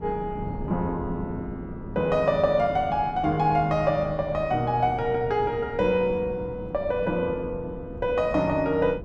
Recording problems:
wind noise; below 280 Hz, SNR 13 dB

